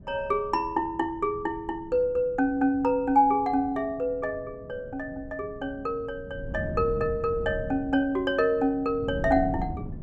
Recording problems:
wind noise; below 210 Hz, SNR 13 dB

